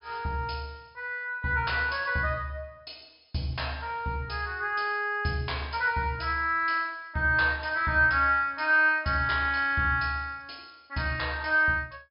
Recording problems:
treble cut off; nothing above 5.5 kHz

